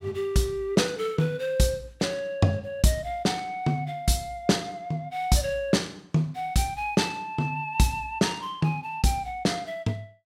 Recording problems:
none

